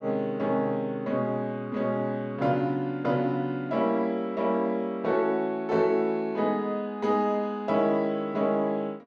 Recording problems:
none

